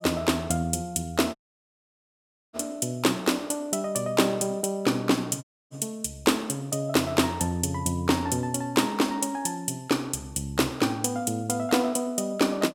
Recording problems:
audio cutting out; at 1.5 s for 1 s and at 5.5 s

